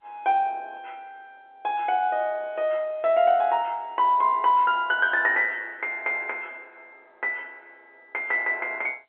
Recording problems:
phone line; 280 Hz to 3.5 kHz, G.711

